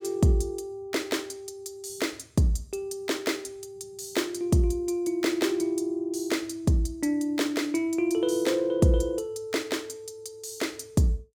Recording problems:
none

